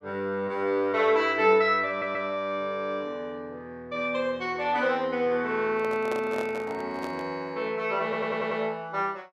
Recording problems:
audio stuttering; at 2 s and at 8 s
handling noise; from 5.5 to 7.5 s; peak -3 dB vs average level

